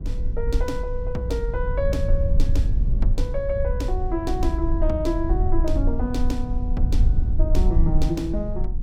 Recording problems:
low-frequency rumble; below 62 Hz, strongest tone 20 Hz, SNR -3 dB

